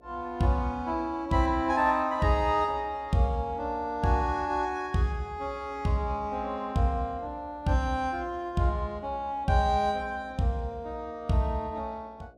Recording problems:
hum; 60 Hz, harmonics up to 720 Hz, SNR 29 dB

